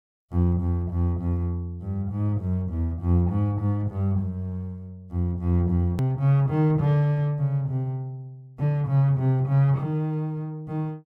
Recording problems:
click at an edit; at 6 s

